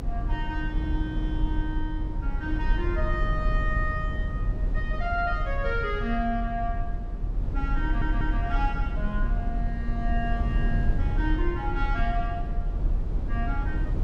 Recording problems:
low-frequency rumble; below 68 Hz, SNR -3 dB
stutter; at 8 s

